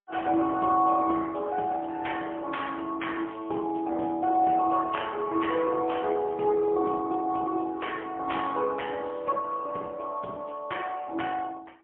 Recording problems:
telephone audio; 170 Hz to 3.4 kHz, AMR-NB, then MP3

